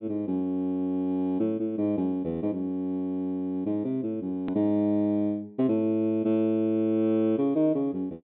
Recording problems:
low-pass filter; nothing above 4 kHz
click at an edit; at 4.5 s

